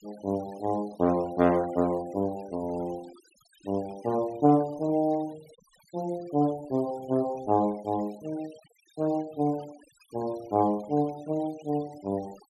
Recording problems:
denoising artefacts; signal-to-artefact ratio 23 dB

